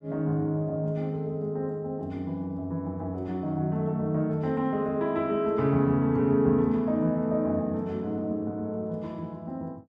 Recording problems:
none

